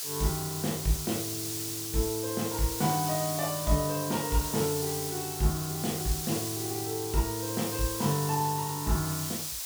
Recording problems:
hiss; slope +3 dB per octave, SNR 3 dB

